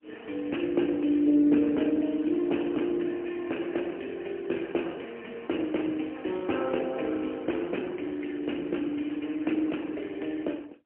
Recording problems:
telephone audio; 240 Hz to 3.1 kHz, AMR-NB, then MP3

